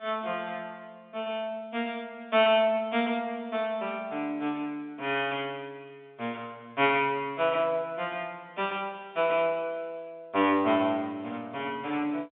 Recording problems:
phone line; 320 Hz to 3.6 kHz, G.711

